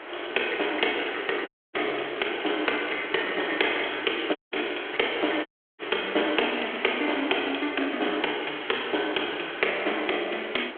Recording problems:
telephone audio; 300 Hz to 3.4 kHz, G.726
hiss; SNR 14 dB
wind on the microphone; below 490 Hz, SNR 20 dB
audio cutting out; at 1.5 s, at 4.5 s and at 5.5 s
crackling; 4 times, first at 1.5 s; loose cable, SNR 17 dB

